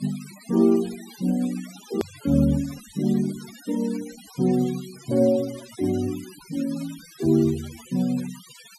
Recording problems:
noise reduction artefacts; signal-to-artefact ratio 19 dB
edit click; at 2 s

